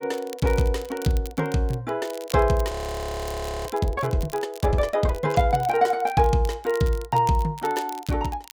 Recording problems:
crackle; vinyl, SNR 20 dB
audio freezing; at 2.5 s for 1 s

